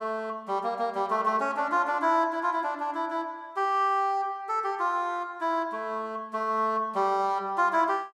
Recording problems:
none

